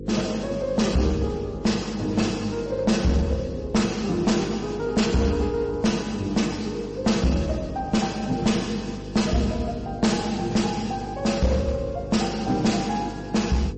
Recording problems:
lossy compression; MP3, then MP3, log-spectral distance 3 dB, nothing above 8.2 kHz
distortion; hard clipping, uneven, signal-to-distortion ratio 11 dB
electrical hum; 50 Hz, harmonics up to 500 Hz, SNR 12 dB

